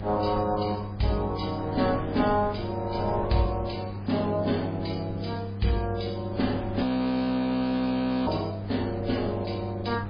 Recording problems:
lossy compression; AAC, then MP3, log-spectral distance 4 dB, nothing above 5 kHz
hum; 50 Hz, harmonics up to 800 Hz, SNR 8 dB
wind on the microphone; below 390 Hz, SNR 13 dB
frozen audio; at 7 s for 1.5 s

